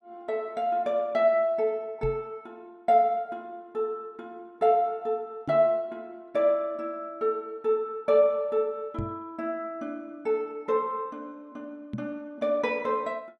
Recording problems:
knock on the microphone; 4 times, first at 2 s; peak -2 dB vs average level

